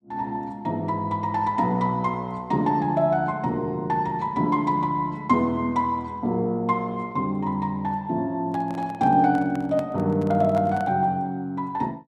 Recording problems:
handling noise; from 8.5 to 11 s; peak -8 dB vs average level

